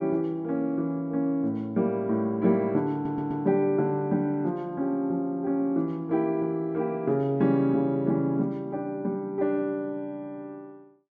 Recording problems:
audio stuttering; at 3 s

